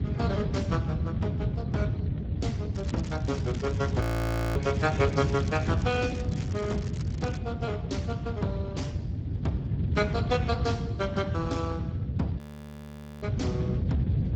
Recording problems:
codec artefacts; Speex, log-spectral distance 2 dB, nothing above 20.1 kHz
rumble; below 180 Hz, SNR -1 dB
crackle; from 3 to 4 s and from 4.5 to 7.5 s; loose cable, SNR 16 dB
frozen audio; at 4 s for 0.5 s and at 12 s for 1 s

